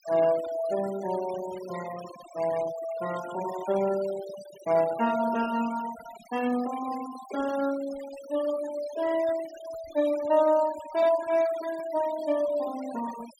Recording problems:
denoising artefacts; signal-to-artefact ratio 16 dB

